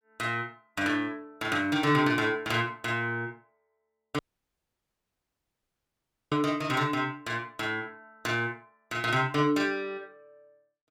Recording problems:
dropout; at 4 s for 2 s

